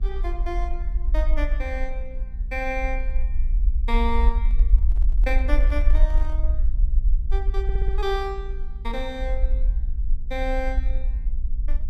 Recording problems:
hum; 60 Hz, harmonics up to 660 Hz, SNR 17 dB
rumble; below 50 Hz, SNR -6 dB
microphone handling noise; from 4.5 to 6.5 s; peak -12 dB vs average level
audio stuttering; at 7.5 s

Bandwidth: 14.5 kHz